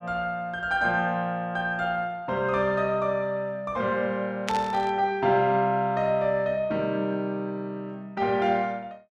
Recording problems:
burst of static; at 4.5 s; peak 0 dB vs average level

